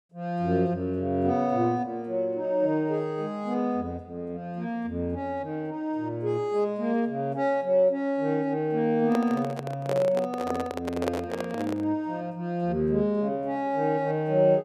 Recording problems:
handling noise; from 9 to 12 s; peak +2 dB vs average level

